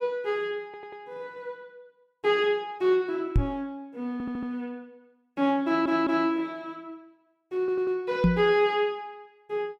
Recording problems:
stutter; 4 times, first at 0.5 s
microphone bump; at 3.5 s and at 8 s; peak +9 dB vs average level

